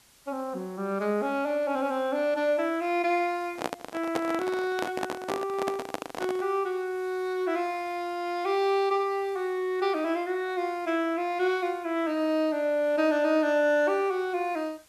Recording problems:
hiss; slope 0 dB per octave, SNR 28 dB
handling noise; from 3.5 to 6.5 s; peak +2 dB vs average level

